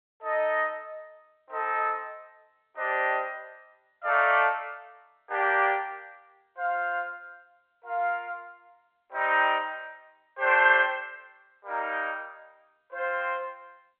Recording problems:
telephone audio; 340 Hz to 3.5 kHz, G.711

